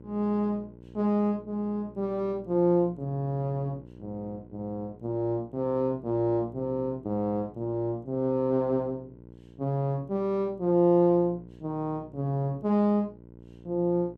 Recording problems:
electrical hum; 60 Hz, harmonics up to 900 Hz, SNR 21 dB

